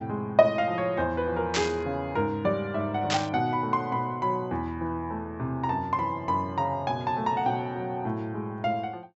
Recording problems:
treble cut off; nothing above 7.7 kHz
burst of static; at 1.5 s and at 3 s; peak +4 dB vs average level

